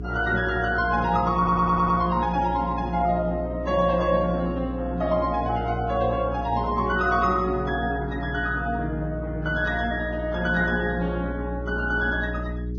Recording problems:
lossy codec; Vorbis, log-spectral distance 2 dB, nothing above 5.3 kHz
hum; 60 Hz, harmonics up to 420 Hz, SNR 9 dB
stutter; at 1.5 s

